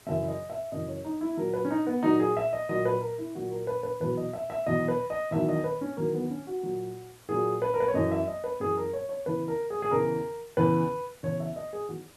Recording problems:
hiss; slope -3 dB per octave, SNR 25 dB

